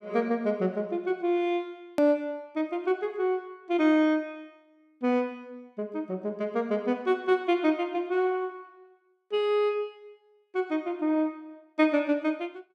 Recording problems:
click at an edit; at 2 s

